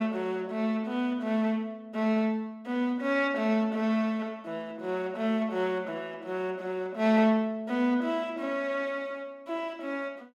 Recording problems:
none

